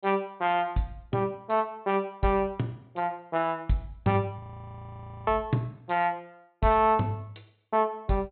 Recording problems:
low-pass filter; nothing above 4 kHz
frozen audio; at 4.5 s for 1 s

